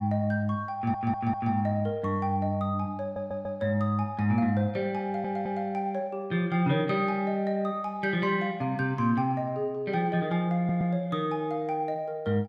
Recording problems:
audio stuttering; 4 times, first at 1 s

